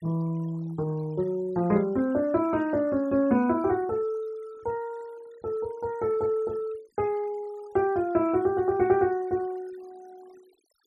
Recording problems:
noise reduction artefacts; signal-to-artefact ratio 26 dB

